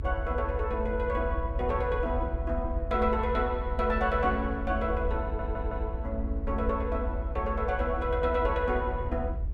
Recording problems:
low-frequency rumble; below 72 Hz, SNR 4 dB
audio stuttering; at 5 s

